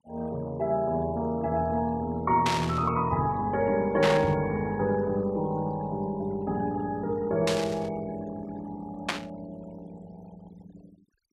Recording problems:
denoising artefacts; signal-to-artefact ratio 24 dB
burst of static; 4 times, first at 2.5 s; peak +4 dB vs average level

